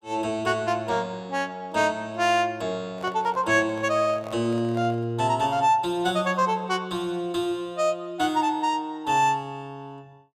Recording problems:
handling noise; from 3 to 5 s; peak -10 dB vs average level

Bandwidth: 15.5 kHz